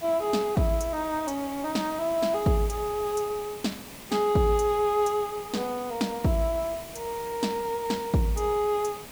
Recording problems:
hiss; SNR 15 dB

